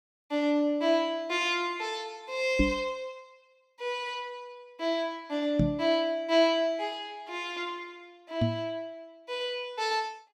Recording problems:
microphone thump; at 2.5 s, at 5.5 s and at 8.5 s; peak +7 dB vs average level

